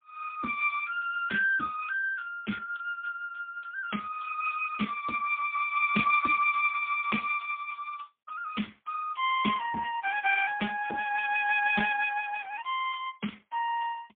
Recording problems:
phone line; 150 Hz to 2.9 kHz, AMR-NB, then MP3

